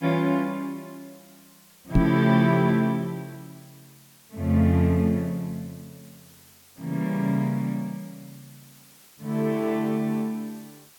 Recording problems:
hiss; slope 0 dB per octave, SNR 26 dB
microphone bump; at 2 s; peak +7 dB vs average level

